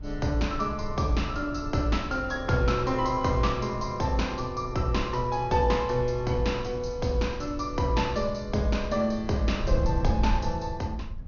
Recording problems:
low-pass filter; nothing above 6.7 kHz
wind on the microphone; below 84 Hz, SNR 9 dB

